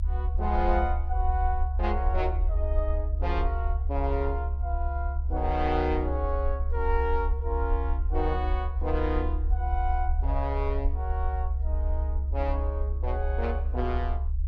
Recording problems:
low-frequency rumble; below 70 Hz, SNR -3 dB

